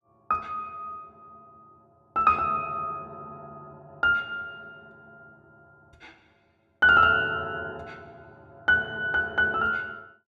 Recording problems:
none

